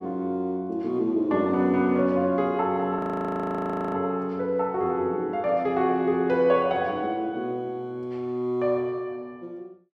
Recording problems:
frozen audio; at 3 s for 1 s

